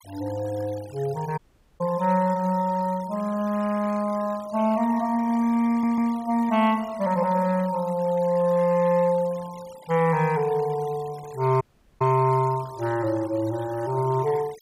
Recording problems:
noise reduction artefacts; signal-to-artefact ratio 22 dB
dropout; at 1.5 s and at 12 s
audio stuttering; at 5.5 s

